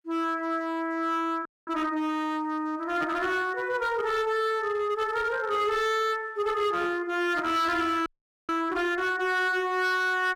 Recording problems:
distorted audio; hard clipping, signal-to-distortion ratio 11 dB
audio freezing; at 1.5 s and at 8 s

